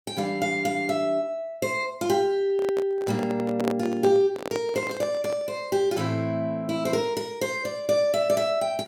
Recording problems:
microphone handling noise; from 2.5 to 5.5 s; peak +1 dB vs average level

